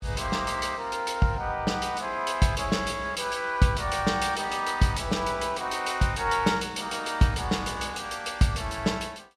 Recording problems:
none

